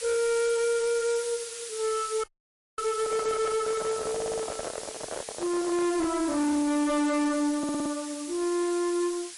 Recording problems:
lossy compression; MP3, then AAC, log-spectral distance 13 dB, nothing above 11 kHz
distorted audio; soft clipping, signal-to-distortion ratio 5 dB
hiss; slope +4 dB per octave, SNR 10 dB
frozen audio; at 2 s for 0.5 s
microphone handling noise; from 3 to 6 s; peak -3 dB vs average level
stutter; at 4 s and at 7.5 s

